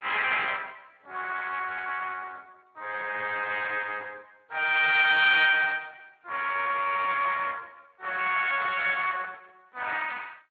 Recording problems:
lossy codec; MP2, then Speex, log-spectral distance 5 dB

